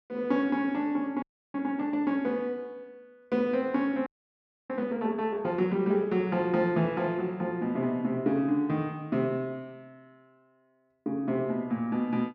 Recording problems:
audio freezing; at 1 s and at 4 s for 0.5 s

